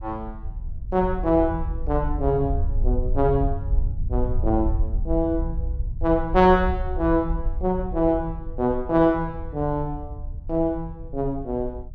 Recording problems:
rumble; below 68 Hz, SNR 6 dB

